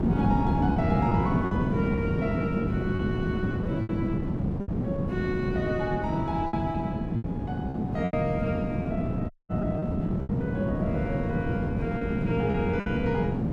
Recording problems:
wind on the microphone; below 280 Hz, SNR -4 dB
packet loss; 6% of the sound replaced, filled with repeated pitch periods
dropout; at 9.5 s

